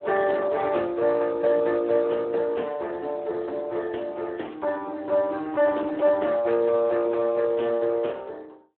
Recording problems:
phone line; 300 Hz to 2.3 kHz, Speex

